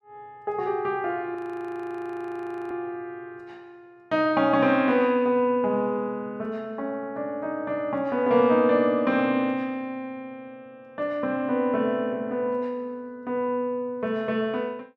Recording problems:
audio freezing; at 1.5 s for 1.5 s

